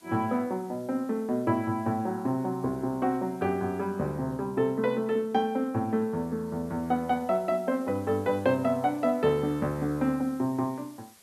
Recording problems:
hiss; slope -1 dB per octave, SNR 27 dB

